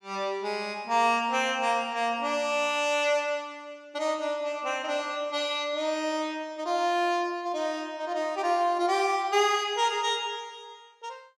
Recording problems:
none

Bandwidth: 15 kHz